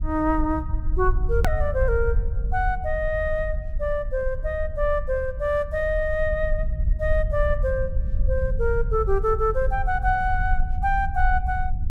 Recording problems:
low-frequency rumble; below 62 Hz, SNR 3 dB
hard cut with a click; at 1.5 s

